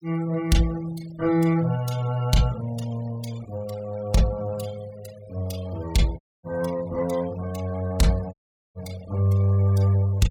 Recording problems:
noise reduction artefacts; signal-to-artefact ratio 20 dB
dropout; at 6 s and at 8.5 s

